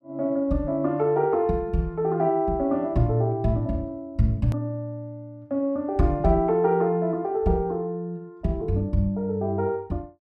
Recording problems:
hard cut with a click; at 4.5 s

